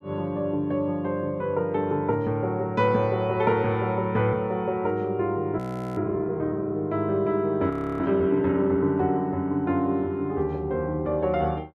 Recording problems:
audio freezing; at 5.5 s and at 7.5 s

